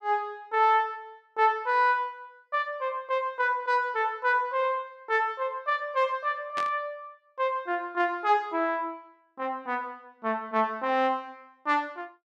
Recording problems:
static burst; at 6.5 s; peak -5 dB vs average level

